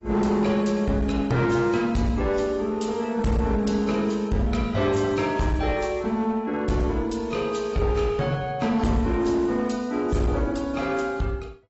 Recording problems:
lossy codec; AAC, log-spectral distance 2 dB, nothing above 7.8 kHz
distorted audio; hard clipping, uneven, signal-to-distortion ratio 11 dB

